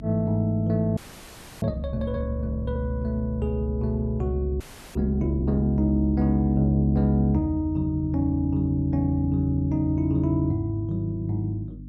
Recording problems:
hum; 50 Hz, harmonics up to 300 Hz, SNR 15 dB
audio freezing; at 1 s for 0.5 s and at 4.5 s

